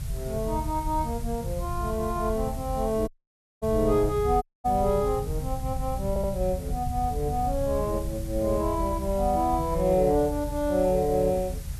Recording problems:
background hiss; slope -1 dB per octave, SNR 19 dB
rumble; below 110 Hz, SNR 7 dB
audio cutting out; at 3 s for 0.5 s and at 4.5 s
audio stuttering; at 6 s

